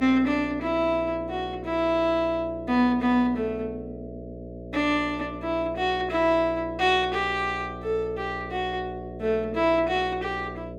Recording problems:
electrical hum; 60 Hz, harmonics up to 660 Hz, SNR 13 dB

